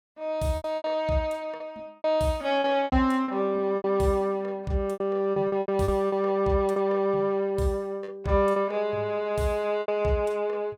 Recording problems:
packet loss; 10% of the sound replaced, filled with repeated pitch periods

